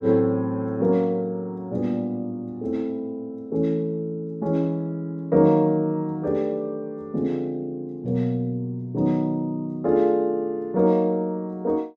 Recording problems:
none

